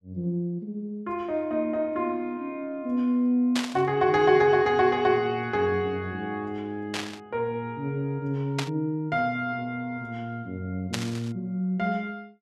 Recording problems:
static burst; 4 times, first at 3.5 s; peak +1 dB vs average level

